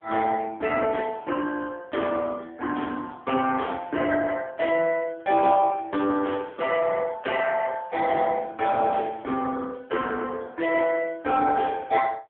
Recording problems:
telephone audio; 260 Hz to 2.8 kHz, AMR-NB

